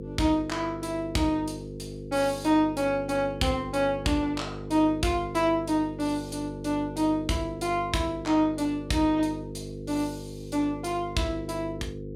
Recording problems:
electrical hum; 50 Hz, harmonics up to 500 Hz, SNR 11 dB

